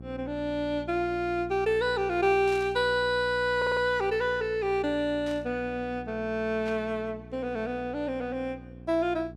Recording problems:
hum; 60 Hz, harmonics up to 780 Hz, SNR 16 dB
burst of static; at 2.5 s, at 5.5 s and at 6.5 s; peak -13 dB vs average level
audio stuttering; at 3.5 s

